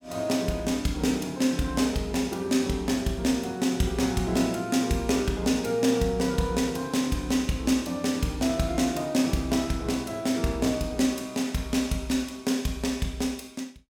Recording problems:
none

